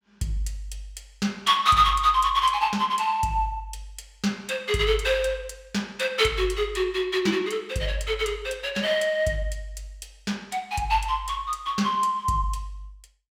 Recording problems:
none

